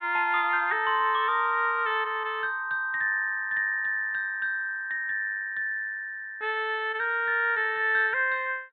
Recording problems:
treble missing; nothing above 4 kHz

